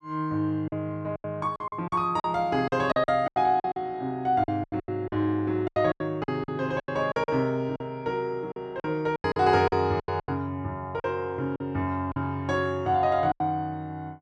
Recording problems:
lost packets; 13% of the sound replaced, filled with silence

